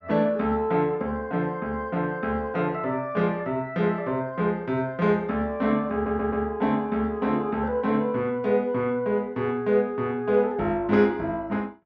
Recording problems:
audio stuttering; at 6 s

